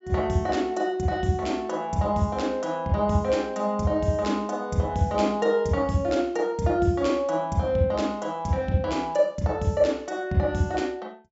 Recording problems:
treble missing; nothing above 8 kHz

